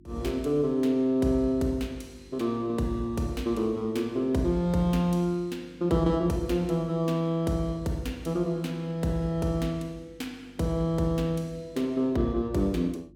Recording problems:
hum; 50 Hz, harmonics up to 350 Hz, SNR 26 dB

